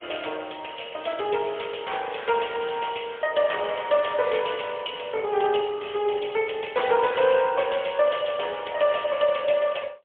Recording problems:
phone line; 340 Hz to 3.5 kHz, AMR-NB, then MP3

